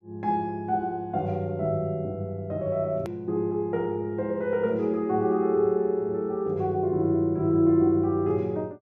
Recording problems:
click at an edit; at 3 s

